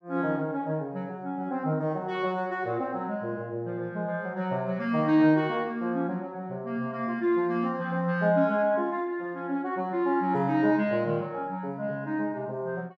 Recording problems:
none

